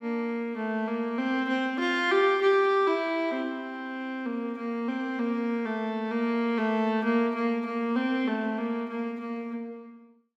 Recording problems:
none

